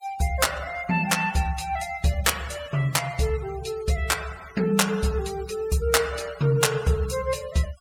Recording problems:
denoising artefacts; signal-to-artefact ratio 18 dB

